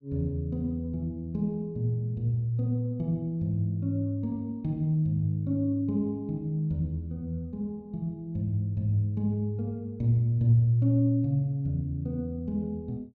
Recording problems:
none

